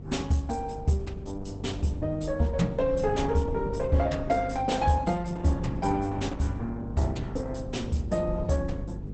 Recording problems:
codec artefacts; Opus, log-spectral distance 3 dB, nothing above 8.2 kHz
mains hum; 50 Hz, harmonics up to 500 Hz, SNR 11 dB
wind on the microphone; below 170 Hz, SNR 13 dB

